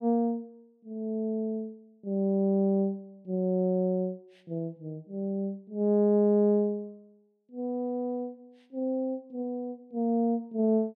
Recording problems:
none

